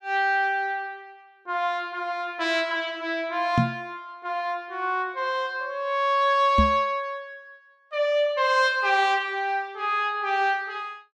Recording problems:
microphone thump; at 3.5 s and at 6.5 s; peak +6 dB vs average level

